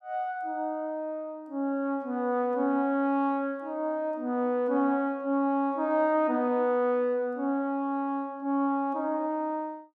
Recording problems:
none

